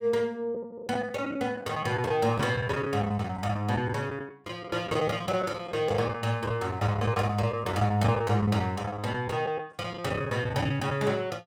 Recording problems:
packet loss; 11% of the sound replaced, filled with the last packet

